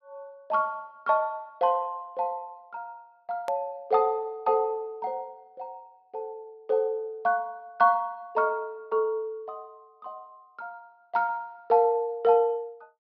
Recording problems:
low-pass filter; nothing above 5.5 kHz
hard cut with a click; at 3.5 s

